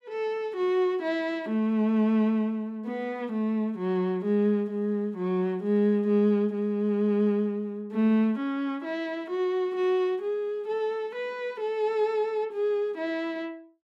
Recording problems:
none

